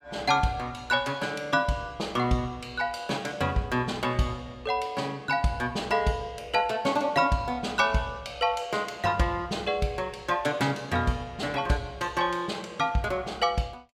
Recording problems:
none

